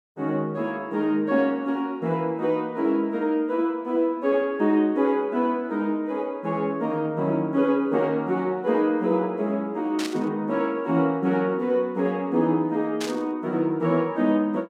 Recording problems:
static burst; at 10 s and at 13 s; peak -4 dB vs average level

